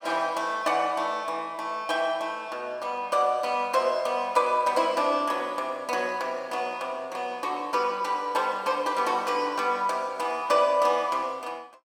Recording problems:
none

